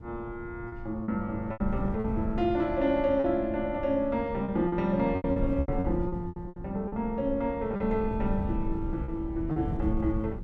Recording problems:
wind noise; below 120 Hz, SNR 8 dB
packet loss; 9% of the sound replaced, filled with repeated pitch periods

